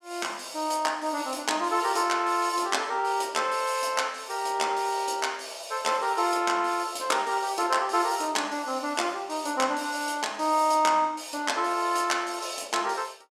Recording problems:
none

